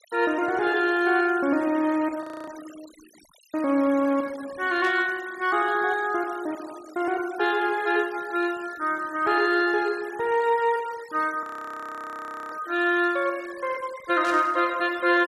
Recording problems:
denoising artefacts; signal-to-artefact ratio 21 dB
frozen audio; at 2 s and at 11 s for 1 s
static burst; at 5 s and at 14 s; peak -10 dB vs average level

